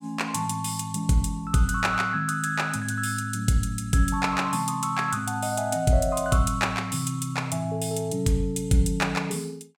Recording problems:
none

